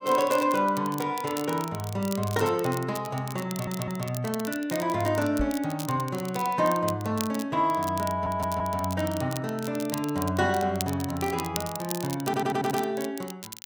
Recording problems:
crackle; vinyl, SNR 12 dB
stutter; at 3.5 s, at 8 s and at 12 s
knock on the microphone; at 5.5 s; peak -1 dB vs average level

